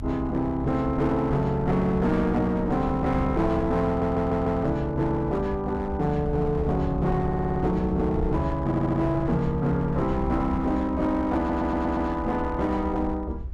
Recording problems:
distortion; hard clipping, uneven, signal-to-distortion ratio 9 dB
rumble; below 82 Hz, SNR 9 dB
stutter; 4 times, first at 4 s

